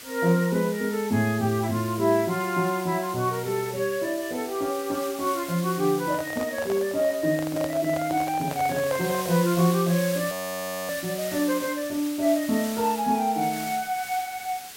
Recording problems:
background hiss; slope +1 dB per octave, SNR 11 dB
handling noise; from 6 to 9.5 s; peak -4 dB vs average level
frozen audio; at 10 s for 0.5 s

